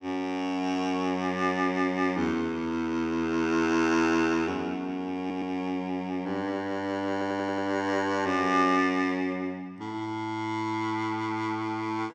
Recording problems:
stutter; at 5 s and at 7 s

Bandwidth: 16.5 kHz